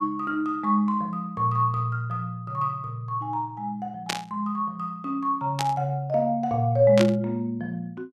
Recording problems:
burst of static; at 4 s, at 5.5 s and at 7 s; peak +3 dB vs average level

